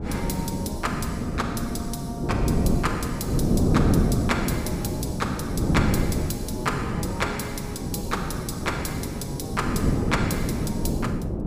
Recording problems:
wind on the microphone; below 300 Hz, SNR -4 dB

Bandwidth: 15 kHz